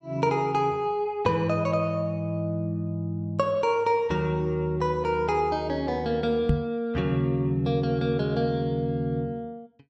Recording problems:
knock on the microphone; at 6.5 s; peak +6 dB vs average level

